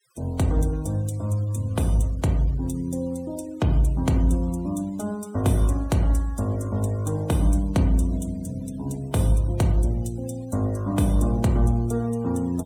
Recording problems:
noise reduction artefacts; signal-to-artefact ratio 24 dB

